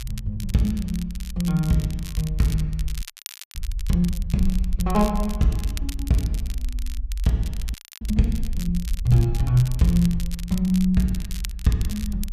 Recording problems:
low-frequency rumble; below 54 Hz, SNR 8 dB
crackling; vinyl, SNR 16 dB
audio freezing; at 3 s for 0.5 s and at 7.5 s

